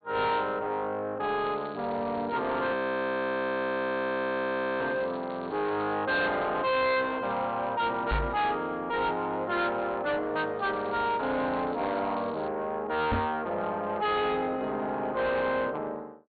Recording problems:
low-pass filter; nothing above 4.4 kHz
distorted audio; soft clipping, signal-to-distortion ratio 6 dB
crackling; from 1.5 to 6 s and from 11 to 12 s; loose cable, SNR 25 dB
audio freezing; at 2.5 s for 2 s
microphone thump; at 8 s and at 13 s; peak +4 dB vs average level

